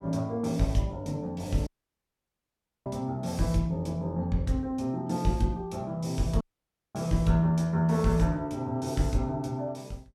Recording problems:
dropout; at 1.5 s for 1 s and at 6.5 s for 0.5 s

